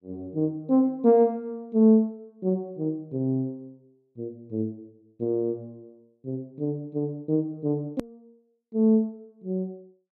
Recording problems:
edit click; at 8 s

